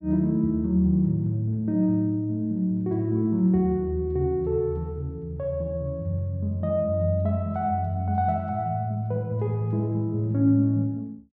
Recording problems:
none

